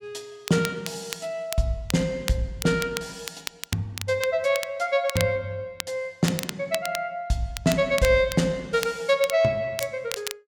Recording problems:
crackle; vinyl, SNR 10 dB

